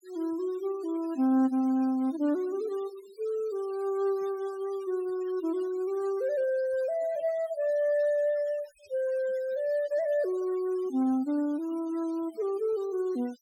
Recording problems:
denoising artefacts; signal-to-artefact ratio 25 dB

